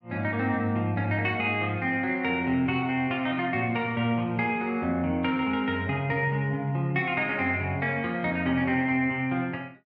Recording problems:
none

